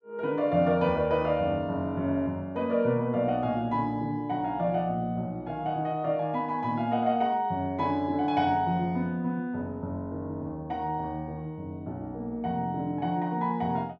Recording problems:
none

